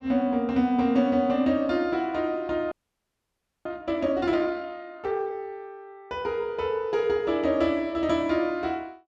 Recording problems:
audio freezing; at 2.5 s for 1 s

